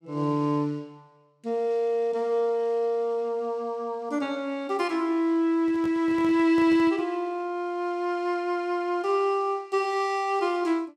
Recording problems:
handling noise; from 5.5 to 7 s; peak -9 dB vs average level

